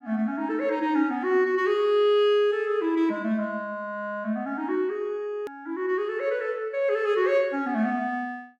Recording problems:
hard cut with a click; at 5.5 s

